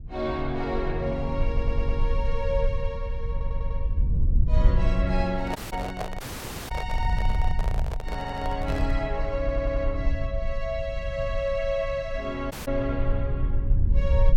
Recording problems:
rumble; below 66 Hz, SNR -1 dB
audio stuttering; 4 times, first at 1.5 s
handling noise; from 5.5 to 9 s; peak +2 dB vs average level
dropout; at 5.5 s, at 6 s for 0.5 s and at 13 s

